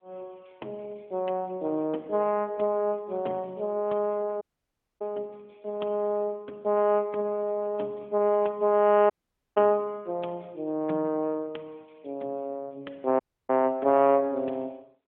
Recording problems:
telephone audio; 240 Hz to 3.8 kHz, AMR-NB
dropout; at 4.5 s for 0.5 s, at 9 s and at 13 s

